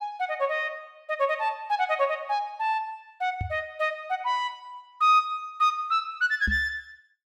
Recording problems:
knock on the microphone; at 3.5 s and at 6.5 s; peak 0 dB vs average level

